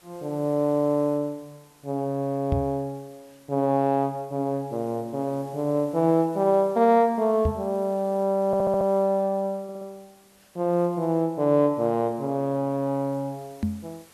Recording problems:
background hiss; slope -2 dB per octave, SNR 29 dB
microphone thump; at 2.5 s, at 7.5 s and at 14 s; peak +3 dB vs average level
stutter; at 8.5 s and at 9.5 s

